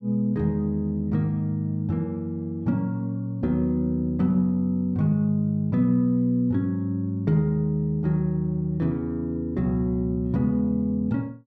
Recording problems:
none

